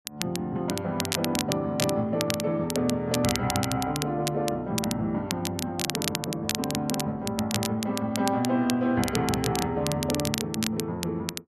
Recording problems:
crackle; vinyl, SNR 5 dB

